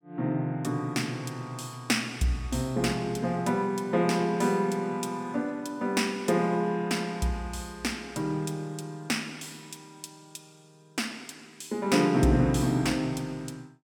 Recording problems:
none

